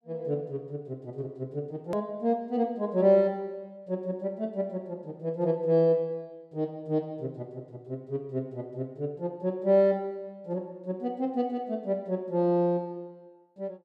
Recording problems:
click at an edit; at 2 s

